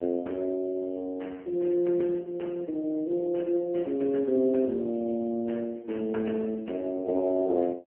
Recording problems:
telephone audio; 190 Hz to 3.5 kHz, AMR-NB

